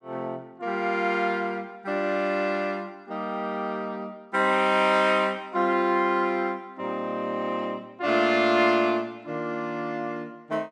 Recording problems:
none

